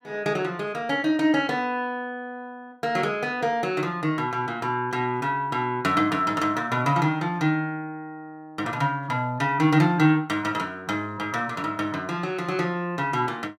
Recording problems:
none

